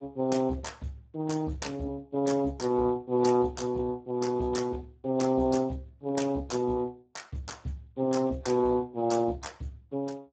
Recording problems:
lossy codec; Speex, log-spectral distance 3 dB, nothing above 7.6 kHz

